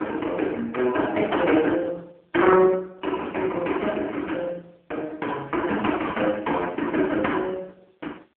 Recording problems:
phone line; 300 Hz to 3.9 kHz, AMR-NB

